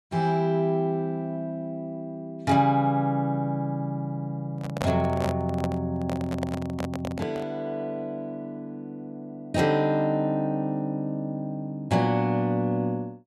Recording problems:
handling noise; from 4.5 to 7.5 s; peak +2 dB vs average level

